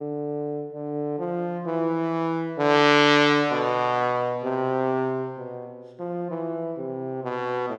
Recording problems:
none

